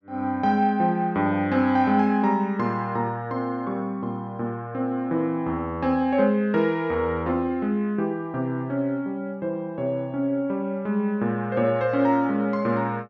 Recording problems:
none

